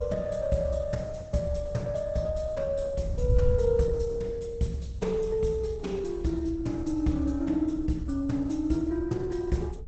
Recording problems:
codec artefacts; Opus, log-spectral distance 2 dB, nothing above 8 kHz
wind on the microphone; below 94 Hz, SNR 9 dB

